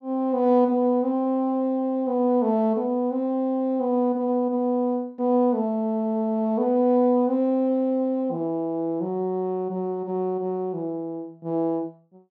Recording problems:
treble cut off; nothing above 8 kHz

